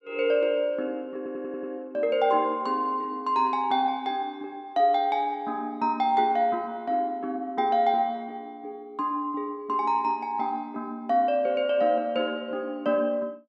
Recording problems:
audio stuttering; at 1 s

